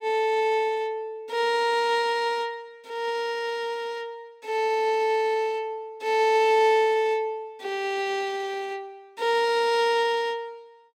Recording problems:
none

